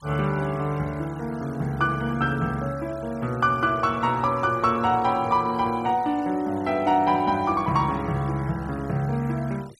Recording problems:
denoising artefacts; signal-to-artefact ratio 24 dB

